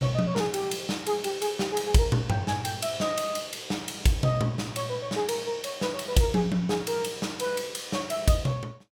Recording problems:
none

